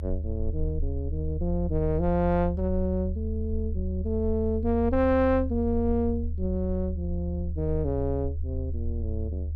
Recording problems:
low-frequency rumble; below 78 Hz, strongest tone 76 Hz, SNR 3 dB

